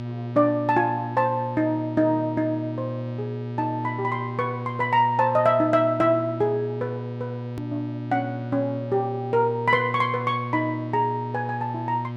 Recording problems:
electrical hum; 60 Hz, harmonics up to 1.6 kHz, SNR 8 dB
edit click; at 7.5 s

